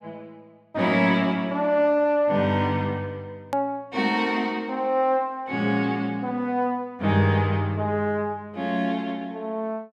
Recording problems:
click at an edit; at 3.5 s

